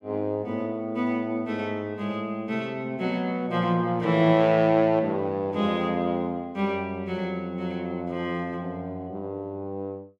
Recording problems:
none

